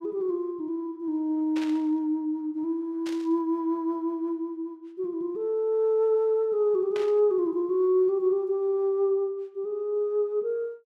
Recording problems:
burst of static; at 1.5 s, at 3 s and at 7 s; peak -9 dB vs average level

